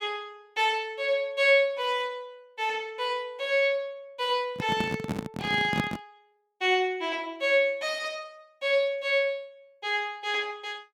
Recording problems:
handling noise; from 4.5 to 6 s; peak +3 dB vs average level

